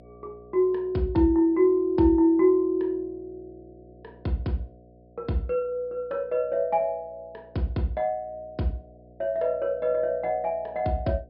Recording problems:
treble cut off; nothing above 5.5 kHz
hum; 60 Hz, harmonics up to 720 Hz, SNR 27 dB

